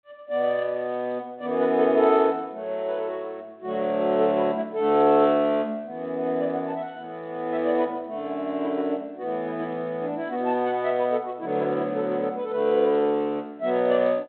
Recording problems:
phone line; 190 Hz to 3.9 kHz, G.726

